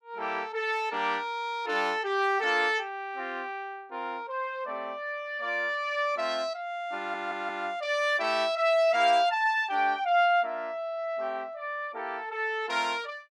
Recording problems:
audio stuttering; at 7 s

